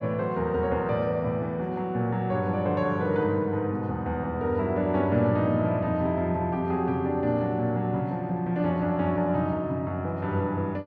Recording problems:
none

